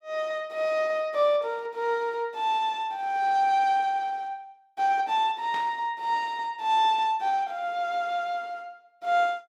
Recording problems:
static burst; at 5.5 s; peak -11 dB vs average level

